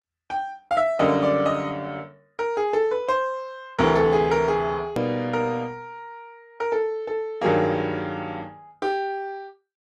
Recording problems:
lossy compression; Opus, log-spectral distance 2 dB, nothing above 13.3 kHz
hard cut with a click; at 5 s

